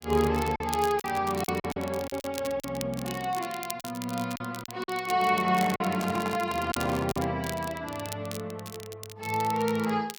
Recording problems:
crackle; vinyl, SNR 13 dB
lost packets; 6% of the sound replaced, filled with silence
microphone handling noise; from 5.5 to 7 s; peak -2 dB vs average level

